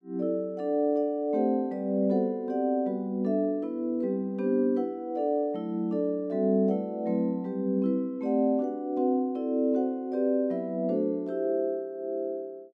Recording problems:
none

